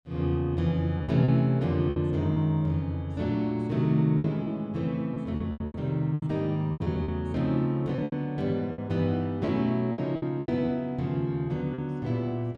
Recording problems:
lost packets; 9% of the sound replaced, filled with repeated pitch periods

